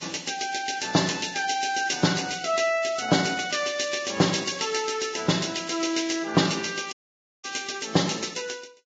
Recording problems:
codec artefacts; Vorbis, log-spectral distance 8 dB, nothing above 7.3 kHz
audio cutting out; at 7 s for 0.5 s

